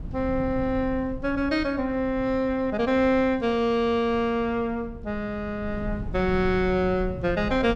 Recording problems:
wind on the microphone; below 150 Hz, SNR 13 dB

